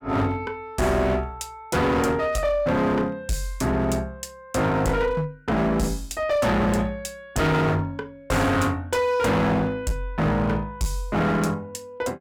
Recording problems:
distorted audio; hard clipping, uneven, signal-to-distortion ratio 7 dB

